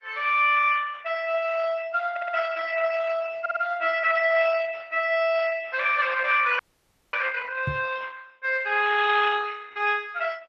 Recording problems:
lossy codec; Opus, log-spectral distance 4 dB
stutter; at 2 s and at 3.5 s
frozen audio; at 6.5 s for 0.5 s
knock on the microphone; at 7.5 s; peak 0 dB vs average level

